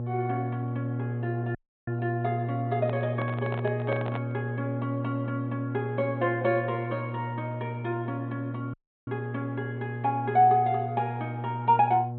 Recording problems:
low-pass filter; nothing above 4 kHz
electrical hum; 60 Hz, harmonics up to 840 Hz, SNR 4 dB
audio cutting out; at 1.5 s and at 8.5 s
handling noise; from 3 to 4.5 s; peak -2 dB vs average level

